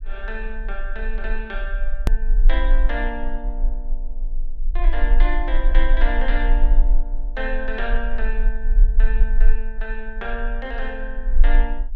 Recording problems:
low-frequency rumble; below 34 Hz, strongest tone 24 Hz, SNR -6 dB
edit click; at 2 s

